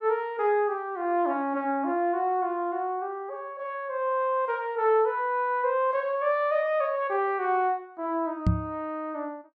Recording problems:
microphone bump; at 8.5 s; peak +7 dB vs average level

